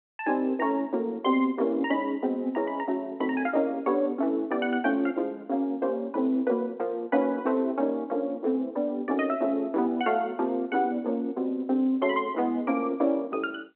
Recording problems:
telephone audio; 220 Hz to 3.5 kHz, G.711

